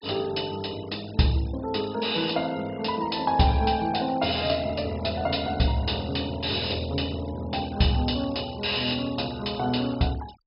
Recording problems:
low-pass filter; nothing above 5.5 kHz
noise reduction artefacts; signal-to-artefact ratio 21 dB

